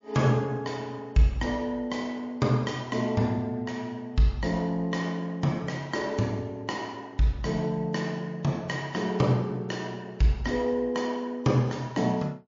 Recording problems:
lossy codec; MP3, log-spectral distance 2 dB, nothing above 6.2 kHz

